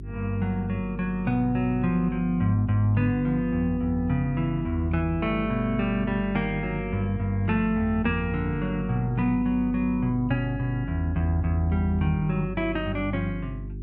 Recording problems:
hum; 50 Hz, harmonics up to 400 Hz, SNR 11 dB

